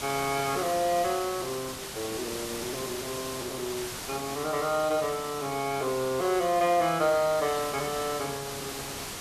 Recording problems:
hiss; slope -2 dB per octave, SNR 7 dB

